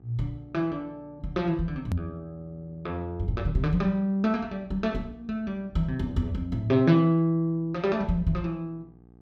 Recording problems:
hum; 60 Hz, harmonics up to 1.2 kHz, SNR 27 dB
hard cut with a click; at 2 s

